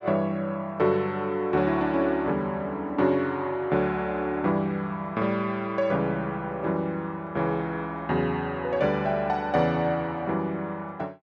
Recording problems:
none

